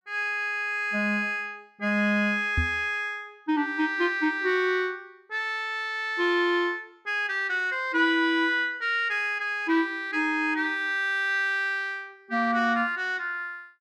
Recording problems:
knock on the microphone; at 2.5 s; peak +2 dB vs average level

